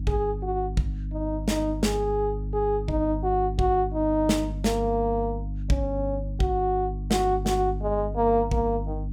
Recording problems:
electrical hum; 50 Hz, harmonics up to 300 Hz, SNR 6 dB

